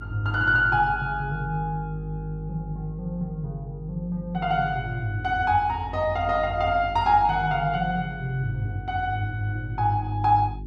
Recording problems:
hum; 50 Hz, harmonics up to 400 Hz, SNR 13 dB

